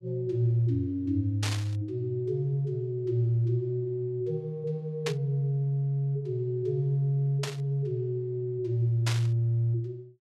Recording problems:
static burst; 4 times, first at 1.5 s; peak 0 dB vs average level

